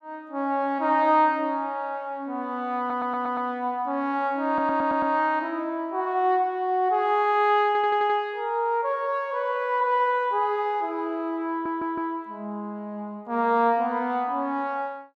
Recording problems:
stutter; 4 times, first at 3 s

